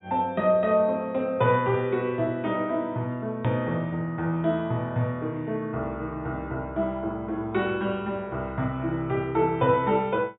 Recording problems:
treble missing; nothing above 4 kHz
click at an edit; at 3.5 s

